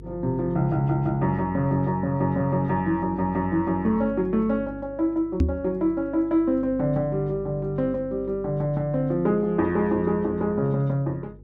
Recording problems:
hum; 50 Hz, harmonics up to 500 Hz, SNR 19 dB
knock on the microphone; at 5.5 s; peak +6 dB vs average level

